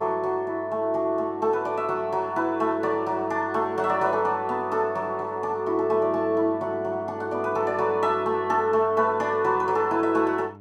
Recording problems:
mains hum; 50 Hz, harmonics up to 1.4 kHz, SNR 21 dB

